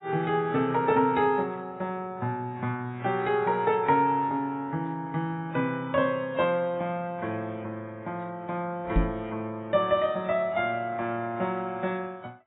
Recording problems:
lossy compression; AAC, log-spectral distance 2 dB, nothing above 3.8 kHz
microphone bump; at 9 s; peak +7 dB vs average level

